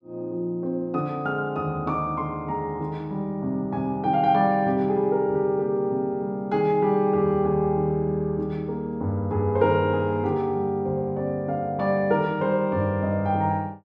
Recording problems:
none

